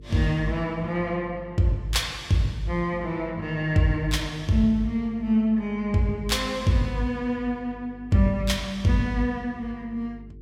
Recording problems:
electrical hum; 50 Hz, harmonics up to 450 Hz, SNR 20 dB

